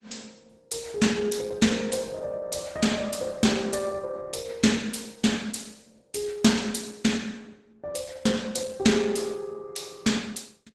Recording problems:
lossy compression; Opus, log-spectral distance 6 dB, nothing above 12 kHz

